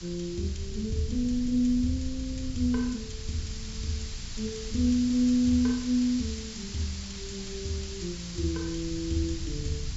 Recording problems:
treble cut off; nothing above 8 kHz
mains hum; 60 Hz, harmonics up to 300 Hz, SNR 21 dB
background hiss; slope +4 dB per octave, SNR 12 dB
wind noise; below 90 Hz, SNR 12 dB

